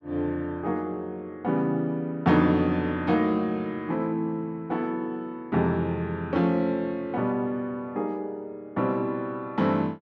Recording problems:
none

